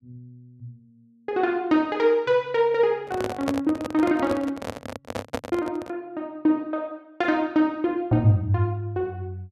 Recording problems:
microphone handling noise; from 3 to 6 s; peak +1 dB vs average level

